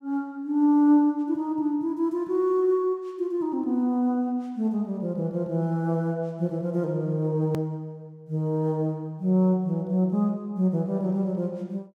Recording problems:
hard cut with a click; at 7.5 s

